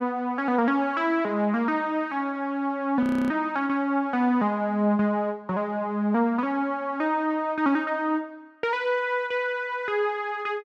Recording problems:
audio freezing; at 3 s

